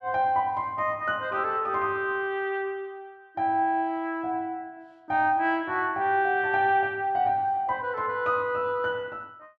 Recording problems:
none

